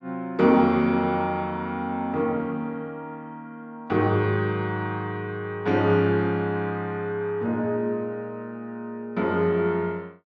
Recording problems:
none

